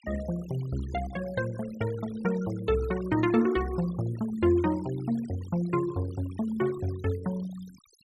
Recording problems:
denoising artefacts; signal-to-artefact ratio 19 dB

